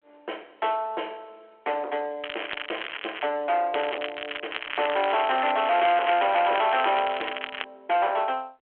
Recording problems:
telephone audio; 300 Hz to 3.3 kHz, G.726
distortion; soft clipping, signal-to-distortion ratio 8 dB
crackling; from 2 to 3.5 s and from 3.5 to 7.5 s; loose cable, SNR 9 dB

